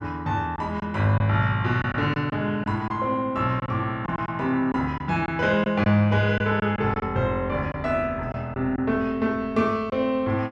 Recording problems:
lost packets; 6% of the sound replaced, filled with silence

